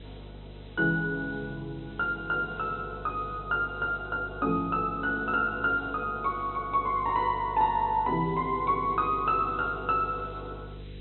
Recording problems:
treble missing; nothing above 4 kHz
mains hum; 50 Hz, harmonics up to 500 Hz, SNR 17 dB
background hiss; SNR 27 dB

